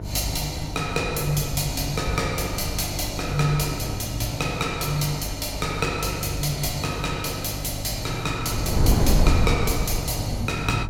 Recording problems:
electrical hum; 50 Hz, harmonics up to 650 Hz, SNR 9 dB
wind noise; below 170 Hz, SNR 5 dB

